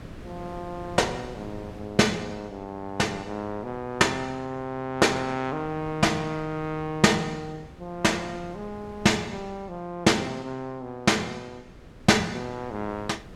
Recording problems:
wind on the microphone; below 430 Hz, SNR 19 dB

